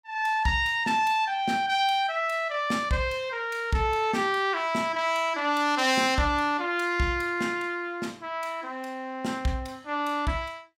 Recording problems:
none

